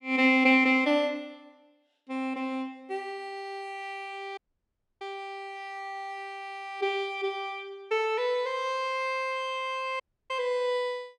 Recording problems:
audio cutting out; at 4.5 s for 0.5 s and at 10 s

